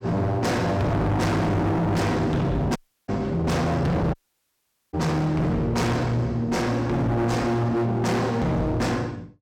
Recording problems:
distorted audio; hard clipping, uneven, signal-to-distortion ratio 6 dB
dropout; at 3 s and at 4 s for 1 s

